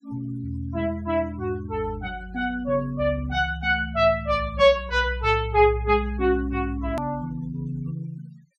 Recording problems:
noise reduction artefacts; signal-to-artefact ratio 27 dB
click at an edit; at 7 s

